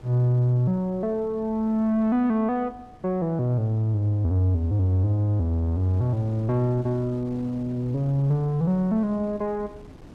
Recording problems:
wind noise; below 330 Hz, SNR 22 dB

